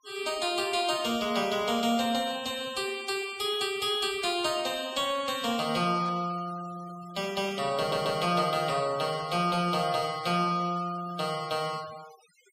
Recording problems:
noise reduction artefacts; signal-to-artefact ratio 18 dB
static burst; at 6 s and at 7.5 s; peak -19 dB vs average level
audio stuttering; at 8 s

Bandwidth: 15.5 kHz